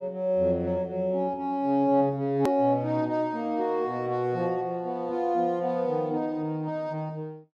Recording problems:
edit click; at 2.5 s

